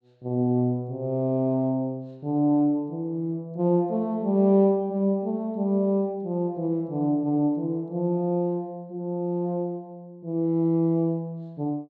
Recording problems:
none

